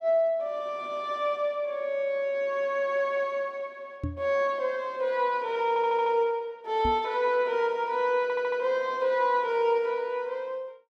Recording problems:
microphone bump; at 4 s and at 7 s; peak -1 dB vs average level
audio stuttering; at 5.5 s and at 8 s

